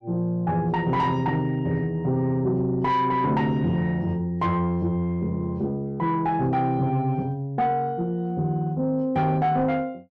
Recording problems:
distortion; soft clipping, signal-to-distortion ratio 11 dB

